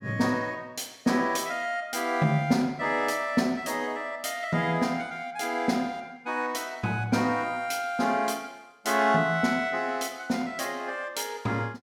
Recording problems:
none

